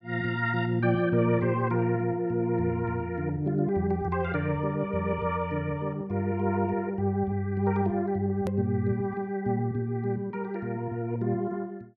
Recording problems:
hard cut with a click; at 8.5 s

